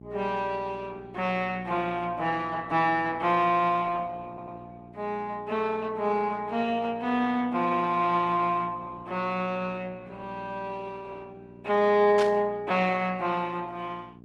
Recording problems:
lossy codec; Opus, log-spectral distance 3 dB
electrical hum; 60 Hz, harmonics up to 780 Hz, SNR 19 dB
stutter; at 4.5 s
static burst; at 12 s; peak -3 dB vs average level

